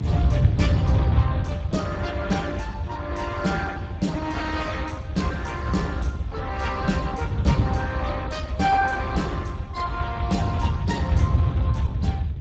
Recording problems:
lossy codec; Speex, log-spectral distance 3 dB, nothing above 7.6 kHz
low-frequency rumble; below 110 Hz, SNR 6 dB
wind noise; below 140 Hz, SNR -2 dB

